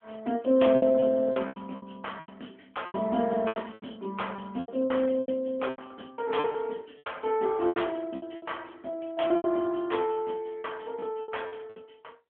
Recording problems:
telephone audio; 190 Hz to 3.4 kHz, AMR-NB
lost packets; 14% of the sound replaced, filled with repeated pitch periods

